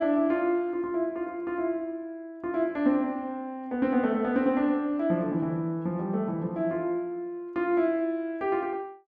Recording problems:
none

